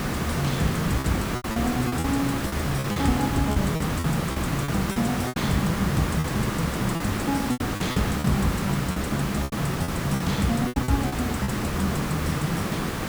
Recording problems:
hiss; slope -5 dB per octave, SNR 1 dB
packet loss; 11% of the sound replaced, filled with repeated pitch periods

